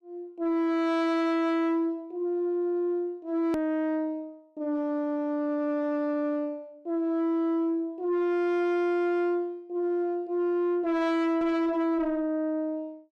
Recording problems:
distorted audio; soft clipping, signal-to-distortion ratio 7 dB
hard cut with a click; at 3.5 s

